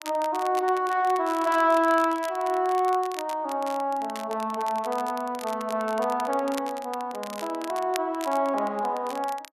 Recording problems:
crackle; vinyl, SNR 17 dB

